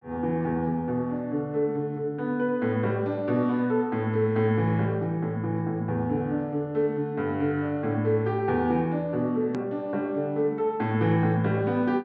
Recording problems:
treble cut off; nothing above 8 kHz
hard cut with a click; at 9.5 s

